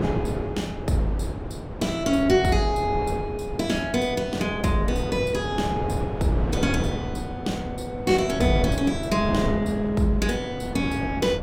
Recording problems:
wind on the microphone; below 430 Hz, SNR 5 dB

